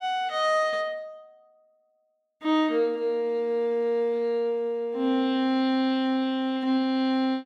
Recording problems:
none

